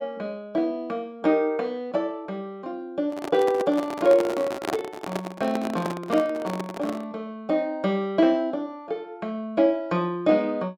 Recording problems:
handling noise; from 3 to 7 s; peak +1 dB vs average level

